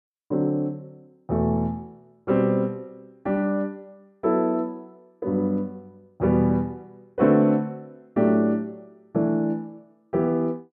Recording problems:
none

